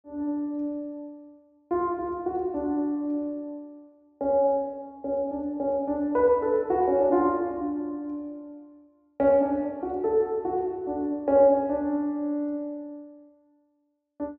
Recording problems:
treble missing; nothing above 8 kHz

